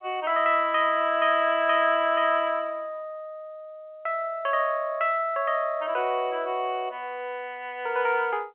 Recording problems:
telephone audio; 340 Hz to 3.2 kHz, G.711

